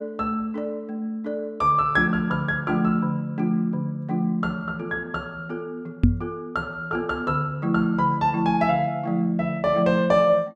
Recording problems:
knock on the microphone; at 6 s; peak +9 dB vs average level

